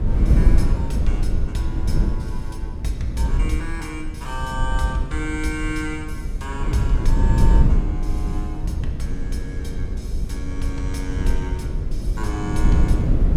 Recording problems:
wind on the microphone; below 84 Hz, SNR -6 dB

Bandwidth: 16 kHz